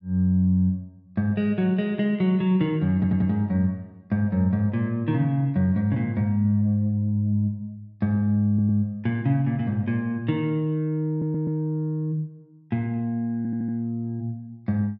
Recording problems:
audio stuttering; 4 times, first at 3 s

